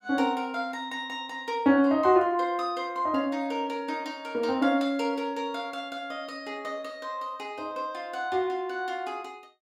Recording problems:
none

